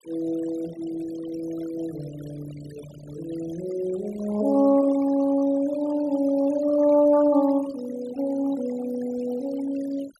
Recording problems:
denoising artefacts; signal-to-artefact ratio 19 dB

